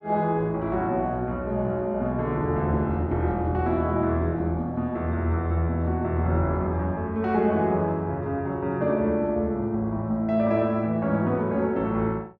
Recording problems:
none

